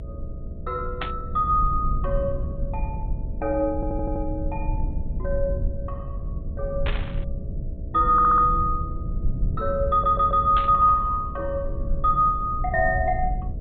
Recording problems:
treble missing; nothing above 4 kHz
hum; 60 Hz, harmonics up to 660 Hz, SNR 21 dB
low-frequency rumble; below 82 Hz, SNR 8 dB
static burst; at 1 s, at 7 s and at 11 s; peak -4 dB vs average level
stutter; at 4 s, at 8 s and at 10 s

